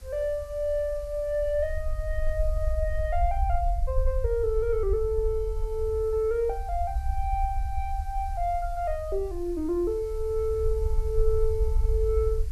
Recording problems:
background hiss; slope -1 dB per octave, SNR 26 dB
low-frequency rumble; below 62 Hz, SNR 3 dB

